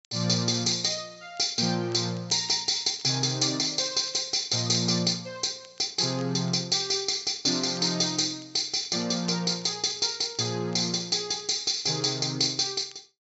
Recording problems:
treble missing; nothing above 8 kHz
crackling; vinyl, SNR 28 dB

